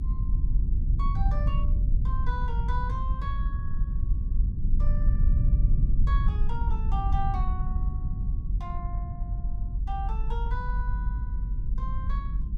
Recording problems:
low-frequency rumble; below 62 Hz, SNR -10 dB

